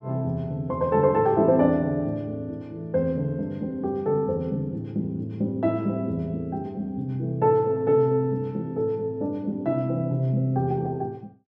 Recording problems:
none

